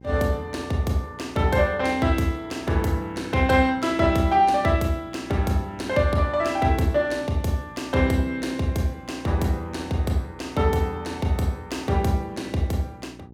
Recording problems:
hum; 60 Hz, harmonics up to 900 Hz, SNR 22 dB

